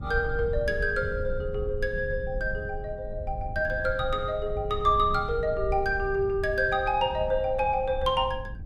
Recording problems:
rumble; below 90 Hz, SNR 10 dB

